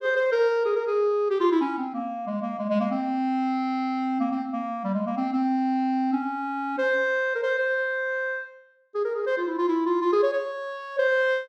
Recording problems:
none

